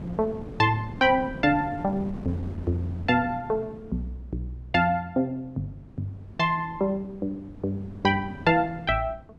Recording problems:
wind on the microphone; below 300 Hz, SNR 15 dB

